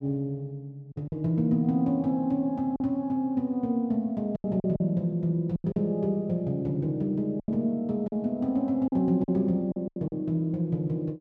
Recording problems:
packet loss; 7% of the sound replaced, filled with silence

